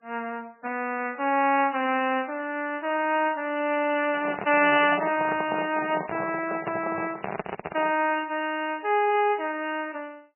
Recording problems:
codec artefacts; MP3, log-spectral distance 6 dB, nothing above 2.5 kHz
handling noise; from 4 to 8 s; peak -1 dB vs average level

